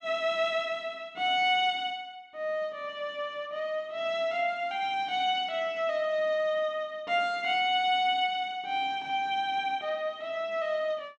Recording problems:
none

